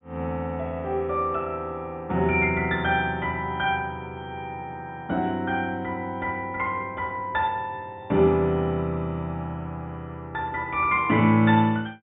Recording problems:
low-pass filter; nothing above 4 kHz

